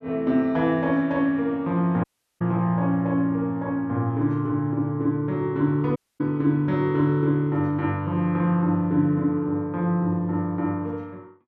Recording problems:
audio cutting out; at 2 s and at 6 s

